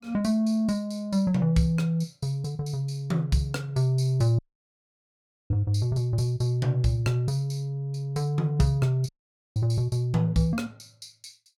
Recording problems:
audio cutting out; at 4.5 s for 1 s and at 9 s

